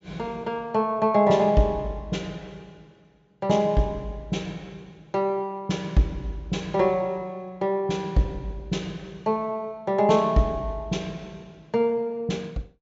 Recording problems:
treble missing; nothing above 8 kHz

